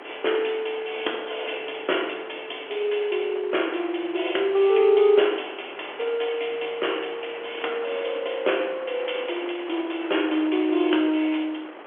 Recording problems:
phone line; 260 Hz to 3.4 kHz, G.711
wind on the microphone; below 1.7 kHz, SNR 16 dB

